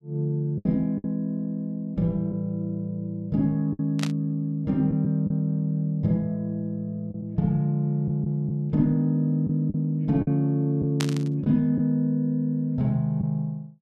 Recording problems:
packet loss; 4% of the sound replaced, filled with the last packet
burst of static; at 4 s and at 11 s; peak 0 dB vs average level

